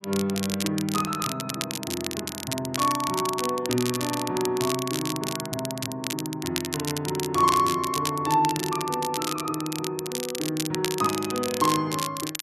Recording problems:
crackling; vinyl, SNR 5 dB

